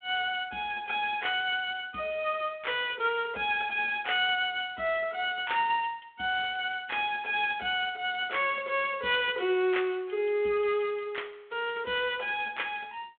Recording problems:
phone line; 220 Hz to 3.6 kHz, G.726

